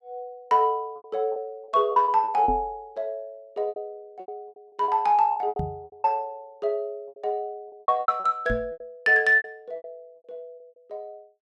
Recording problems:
packet loss; 14% of the sound replaced, filled with repeated pitch periods
microphone thump; at 2.5 s, at 5.5 s and at 8.5 s; peak -3 dB vs average level

